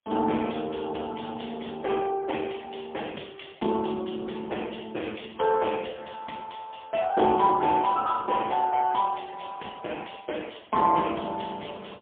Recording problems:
telephone audio; 240 Hz to 3.4 kHz, AMR-NB, then MP3

